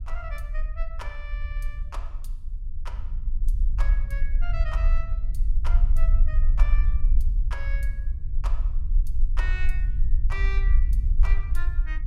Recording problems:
low-frequency rumble; below 44 Hz, strongest tone 22 Hz, SNR -13 dB

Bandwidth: 16 kHz